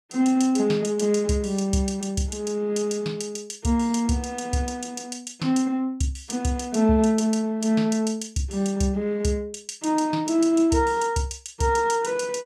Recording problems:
none

